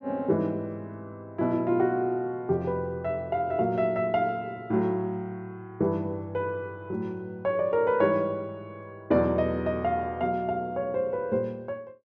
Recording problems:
none

